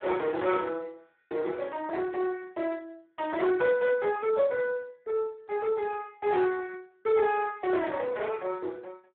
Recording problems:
phone line; 340 Hz to 3.8 kHz, Speex
distortion; soft clipping, signal-to-distortion ratio 12 dB

